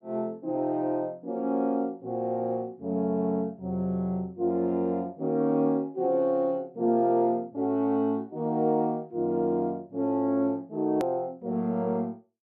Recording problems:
edit click; at 11 s

